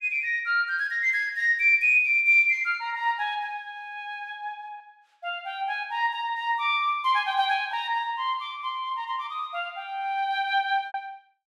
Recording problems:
lost packets; 1.1% of the sound replaced, filled with repeated pitch periods

